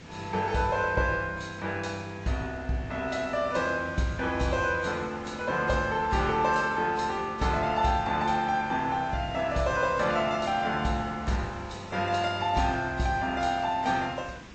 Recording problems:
low-pass filter; nothing above 7.6 kHz
codec artefacts; AAC, log-spectral distance 3 dB
background hiss; slope -4 dB per octave, SNR 19 dB

